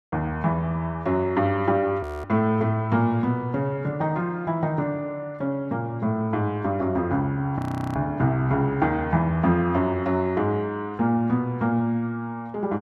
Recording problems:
frozen audio; at 2 s and at 7.5 s

